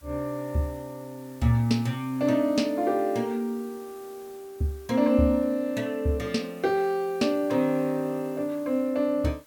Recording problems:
background hiss; slope -1 dB per octave, SNR 26 dB

